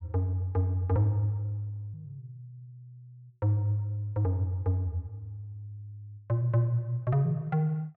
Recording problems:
none

